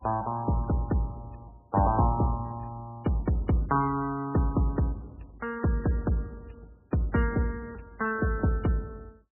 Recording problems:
lossy codec; MP3, log-spectral distance 4 dB

